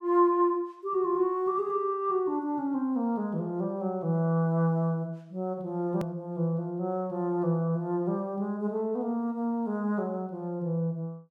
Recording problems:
click at an edit; at 6 s

